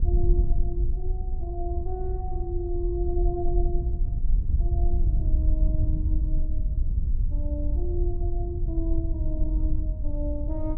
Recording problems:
wind noise; below 62 Hz, SNR -8 dB

